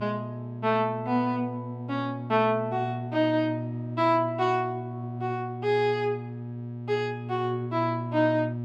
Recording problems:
hum; 60 Hz, harmonics up to 600 Hz, SNR 8 dB

